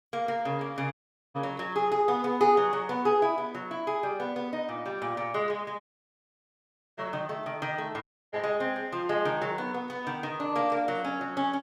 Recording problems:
audio cutting out; at 1 s, at 6 s for 1 s and at 8 s

